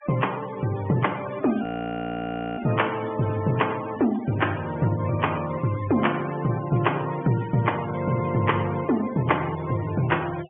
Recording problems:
low-pass filter; nothing above 3.1 kHz
noise reduction artefacts; signal-to-artefact ratio 16 dB
audio freezing; at 1.5 s for 1 s

